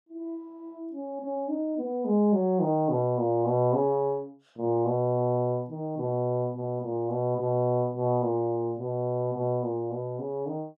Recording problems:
none

